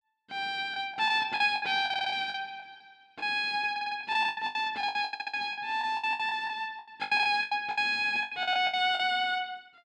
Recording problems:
packet loss; 18% of the sound replaced, filled with the last packet
audio stuttering; at 2 s, at 3.5 s and at 5 s

